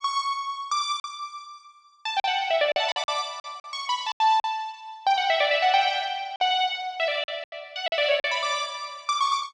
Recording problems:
packet loss; 7% of the sound replaced, filled with silence

